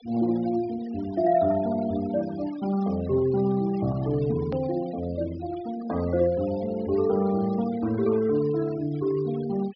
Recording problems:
low-pass filter; nothing above 5.5 kHz
noise reduction artefacts; signal-to-artefact ratio 19 dB
click at an edit; at 4.5 s

